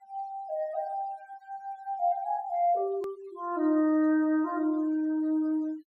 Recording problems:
denoising artefacts; signal-to-artefact ratio 27 dB
hard cut with a click; at 3 s

